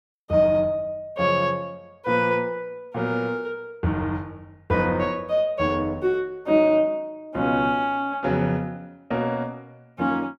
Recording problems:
none

